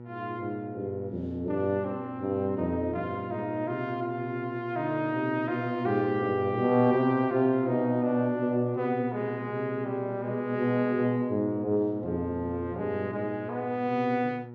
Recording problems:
hum; 60 Hz, harmonics up to 1.3 kHz, SNR 12 dB

